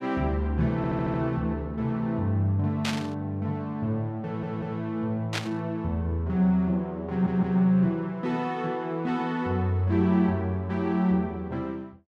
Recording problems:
audio stuttering; at 1 s, at 4 s and at 7 s
burst of static; at 3 s and at 5.5 s; peak +1 dB vs average level

